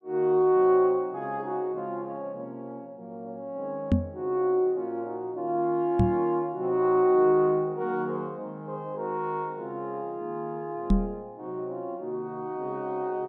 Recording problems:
knock on the microphone; at 4 s, at 6 s and at 11 s; peak +8 dB vs average level

